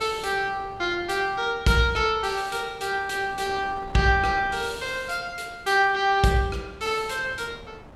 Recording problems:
wind noise; below 820 Hz, SNR 20 dB

